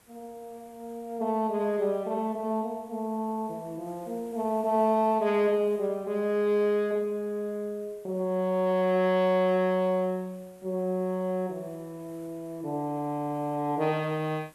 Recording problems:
background hiss; slope -3 dB per octave, SNR 29 dB

